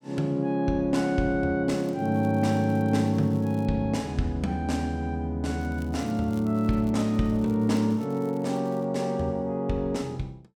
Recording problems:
crackle; from 1.5 to 3.5 s and from 5.5 to 9 s; loose cable, SNR 29 dB

